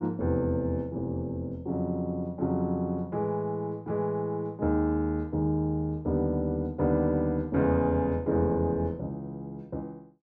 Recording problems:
none

